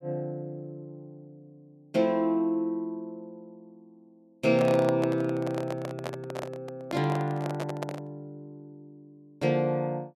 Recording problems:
microphone handling noise; from 4.5 to 8 s; peak -1 dB vs average level

